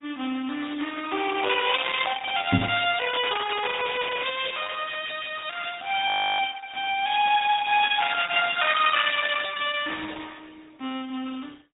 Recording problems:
treble cut off; nothing above 3.7 kHz
codec artefacts; Opus, log-spectral distance 6 dB
microphone bump; at 2.5 s; peak +8 dB vs average level
audio freezing; at 6 s

